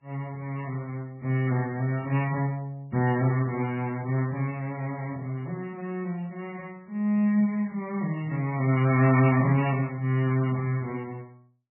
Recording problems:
codec artefacts; MP3, log-spectral distance 2 dB, nothing above 11.3 kHz

